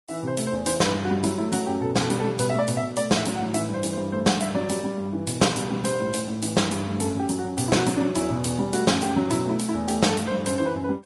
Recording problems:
codec artefacts; Vorbis, log-spectral distance 6 dB, nothing above 10.7 kHz

